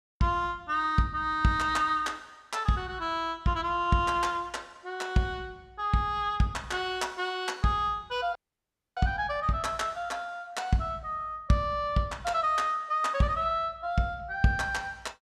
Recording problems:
audio cutting out; at 8.5 s for 0.5 s

